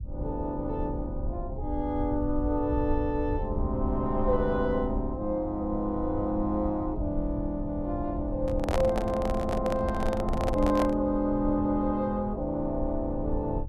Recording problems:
low-frequency rumble; below 82 Hz, SNR 7 dB
handling noise; from 8.5 to 11 s; peak +2 dB vs average level

